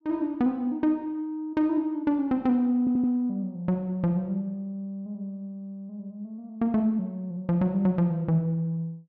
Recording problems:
stutter; at 3 s

